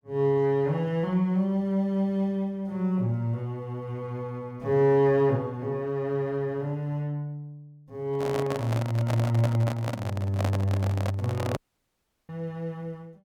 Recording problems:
handling noise; from 8 to 12 s; peak -1 dB vs average level
audio cutting out; at 12 s for 0.5 s

